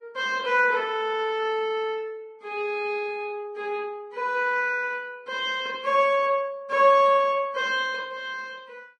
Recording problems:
lossy codec; Vorbis, log-spectral distance 2 dB, nothing above 10.1 kHz

